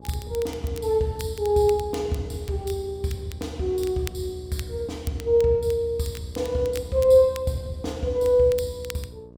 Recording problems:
hum; 60 Hz, harmonics up to 1.1 kHz, SNR 23 dB
crackle; vinyl, SNR 20 dB

